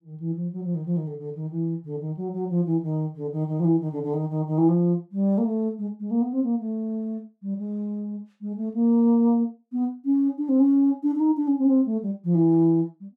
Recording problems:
none

